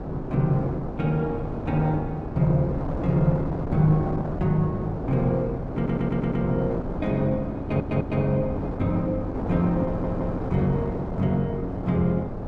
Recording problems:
wind noise; below 500 Hz, SNR 6 dB
stutter; at 6 s, at 7.5 s and at 10 s

